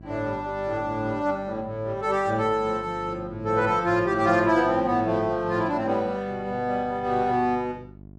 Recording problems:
hum; 50 Hz, harmonics up to 750 Hz, SNR 19 dB

